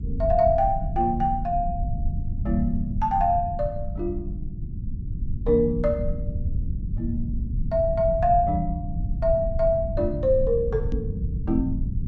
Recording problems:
low-frequency rumble; below 110 Hz, SNR 6 dB
microphone bump; at 11 s; peak -2 dB vs average level

